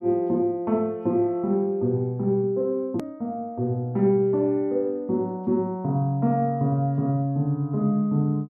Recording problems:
click at an edit; at 3 s

